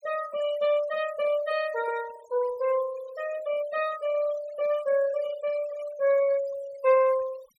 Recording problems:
noise reduction artefacts; signal-to-artefact ratio 17 dB

